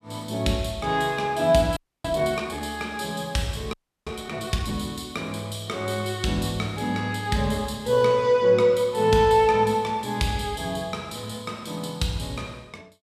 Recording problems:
audio freezing; at 2 s and at 3.5 s

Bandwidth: 13.5 kHz